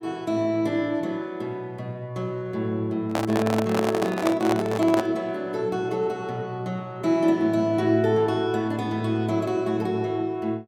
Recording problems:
microphone handling noise; from 3 to 5 s; peak +3 dB vs average level

